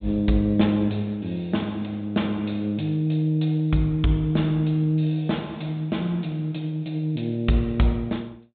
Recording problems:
low-pass filter; nothing above 4 kHz

